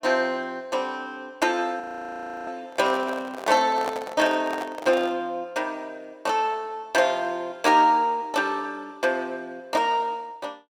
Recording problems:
audio freezing; at 2 s for 0.5 s
handling noise; from 2.5 to 5 s; peak -2 dB vs average level

